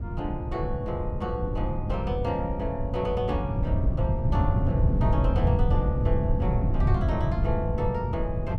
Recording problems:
wind noise; below 140 Hz, SNR -4 dB

